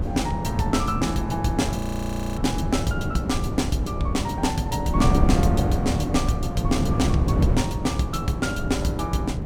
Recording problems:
hum; 60 Hz, harmonics up to 600 Hz, SNR 13 dB
wind on the microphone; below 220 Hz, SNR 0 dB
frozen audio; at 2 s for 0.5 s

